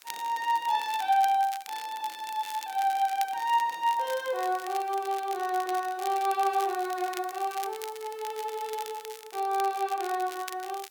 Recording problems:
background hiss; slope +1 dB per octave, SNR 29 dB
crackling; vinyl, SNR 15 dB

